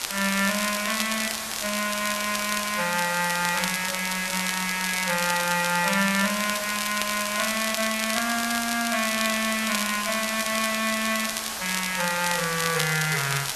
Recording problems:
background hiss; slope 0 dB per octave, SNR 5 dB
crackling; vinyl, SNR 6 dB

